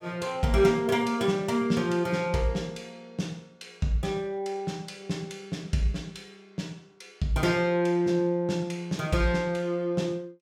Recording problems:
none

